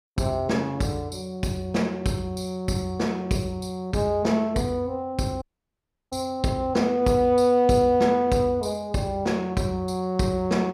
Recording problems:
dropout; at 5.5 s for 0.5 s

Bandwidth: 15 kHz